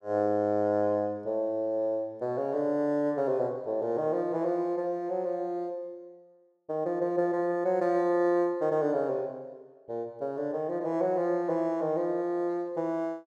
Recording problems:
none

